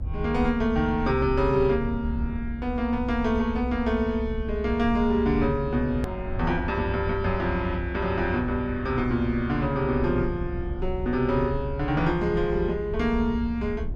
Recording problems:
rumble; below 78 Hz, SNR 8 dB
click at an edit; at 6 s

